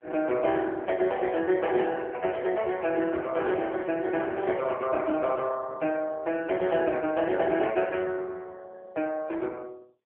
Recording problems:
phone line; 240 Hz to 3.1 kHz, AMR-NB

